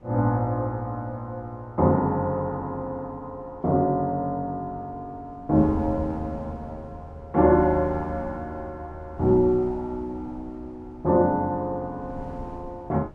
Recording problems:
wind noise; below 250 Hz, SNR 18 dB

